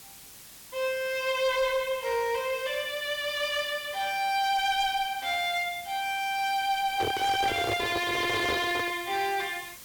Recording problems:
distorted audio; hard clipping, uneven, signal-to-distortion ratio 11 dB
hiss; slope 0 dB per octave, SNR 17 dB
microphone handling noise; from 7 to 9 s; peak 0 dB vs average level

